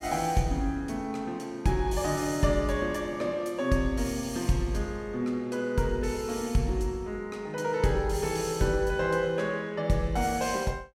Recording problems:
none

